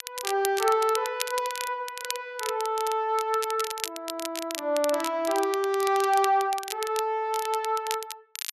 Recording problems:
crackle; vinyl, SNR 9 dB

